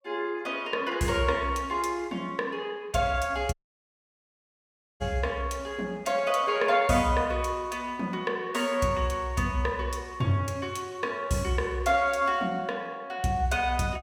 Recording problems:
audio cutting out; at 3.5 s for 1.5 s

